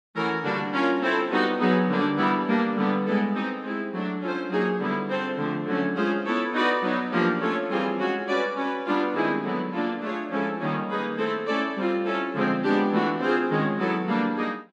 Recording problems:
none

